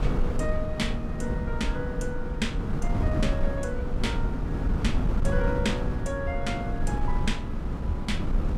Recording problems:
wind on the microphone; below 140 Hz, SNR -3 dB

